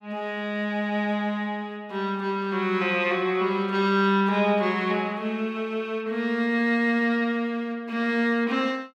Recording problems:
none

